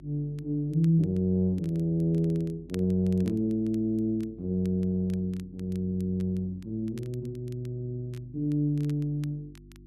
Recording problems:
hum; 50 Hz, harmonics up to 350 Hz, SNR 23 dB
crackle; vinyl, SNR 29 dB

